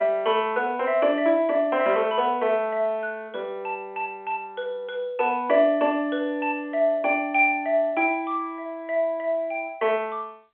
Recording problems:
phone line; 340 Hz to 3.3 kHz, G.711

